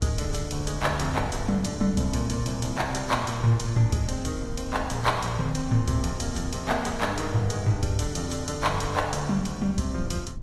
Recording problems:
lossy compression; AAC, log-spectral distance 3 dB
rumble; below 96 Hz, SNR 12 dB

